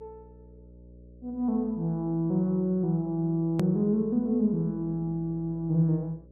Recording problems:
electrical hum; 60 Hz, harmonics up to 600 Hz, SNR 24 dB
hard cut with a click; at 3.5 s

